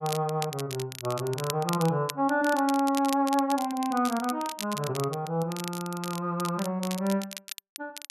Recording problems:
crackling; vinyl, SNR 11 dB

